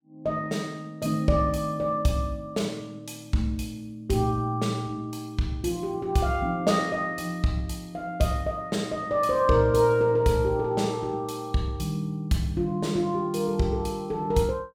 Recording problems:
none

